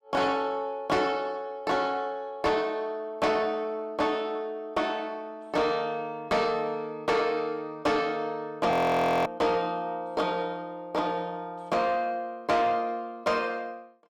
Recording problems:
distorted audio; soft clipping, signal-to-distortion ratio 12 dB
frozen audio; at 8.5 s for 0.5 s

